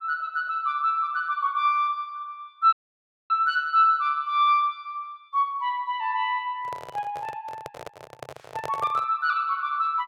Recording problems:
audio cutting out; at 2.5 s for 0.5 s
handling noise; from 6.5 to 9 s; peak -5 dB vs average level

